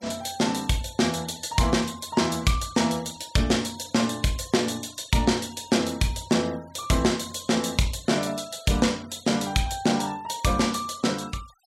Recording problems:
noise reduction artefacts; signal-to-artefact ratio 22 dB

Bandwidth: 16.5 kHz